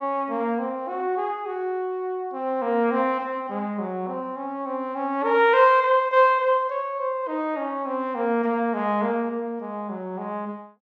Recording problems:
none

